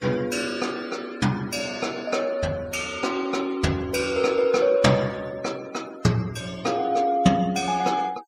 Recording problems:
noise reduction artefacts; signal-to-artefact ratio 21 dB

